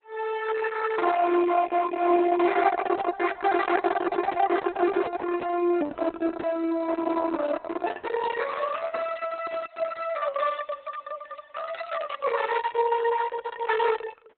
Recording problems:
codec artefacts; Opus, log-spectral distance 4 dB, nothing above 4 kHz
microphone handling noise; from 7 to 10 s; peak -11 dB vs average level

